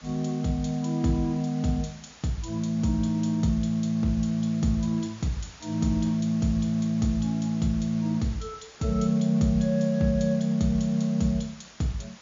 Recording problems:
treble missing; nothing above 7.1 kHz
hiss; slope -1 dB per octave, SNR 22 dB

